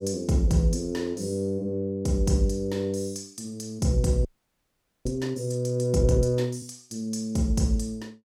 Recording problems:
audio freezing; at 4.5 s for 1 s

